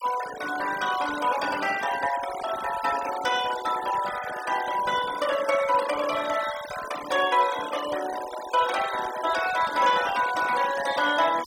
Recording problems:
denoising artefacts; signal-to-artefact ratio 11 dB

